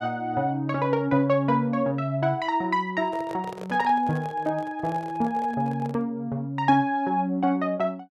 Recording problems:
microphone handling noise; from 3 to 6 s; peak -8 dB vs average level

